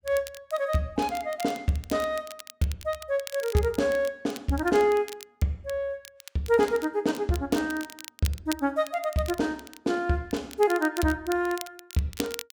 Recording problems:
crackle; vinyl, SNR 15 dB

